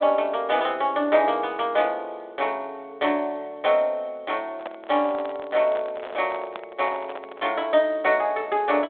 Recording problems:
phone line; 320 Hz to 3.6 kHz, G.726
microphone handling noise; from 4.5 to 7.5 s; peak -6 dB vs average level

